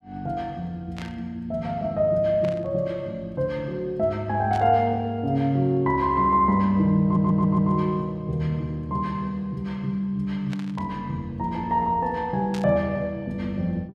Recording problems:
burst of static; 5 times, first at 1 s; peak -9 dB vs average level
audio stuttering; at 7 s

